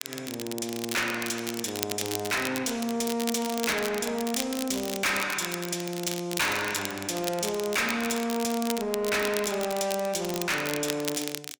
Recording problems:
distortion; soft clipping, signal-to-distortion ratio 6 dB
crackling; vinyl, SNR 7 dB

